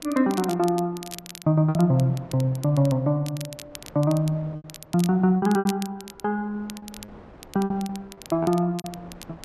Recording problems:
wind on the microphone; below 820 Hz, SNR 25 dB
crackle; vinyl, SNR 18 dB
lost packets; 8% of the sound replaced, filled with repeated pitch periods

